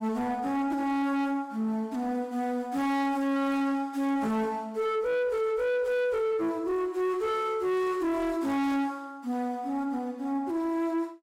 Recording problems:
distortion; soft clipping, signal-to-distortion ratio 7 dB

